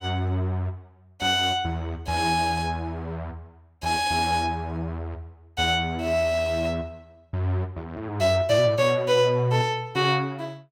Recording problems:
none

